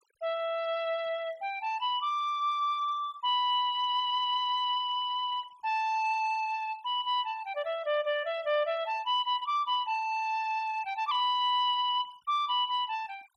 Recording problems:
noise reduction artefacts; signal-to-artefact ratio 26 dB

